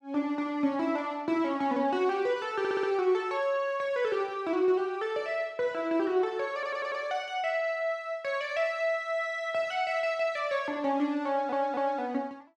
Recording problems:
stutter; at 2.5 s, at 6.5 s and at 11 s

